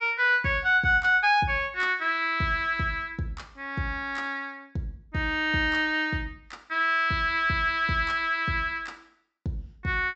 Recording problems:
low-pass filter; nothing above 8 kHz

